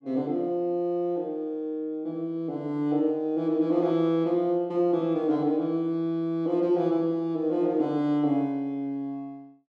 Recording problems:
none

